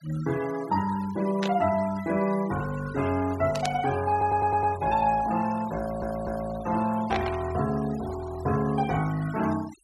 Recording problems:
denoising artefacts; signal-to-artefact ratio 16 dB
burst of static; at 1.5 s, at 3.5 s and at 7 s; peak -1 dB vs average level
audio stuttering; at 4 s and at 6 s

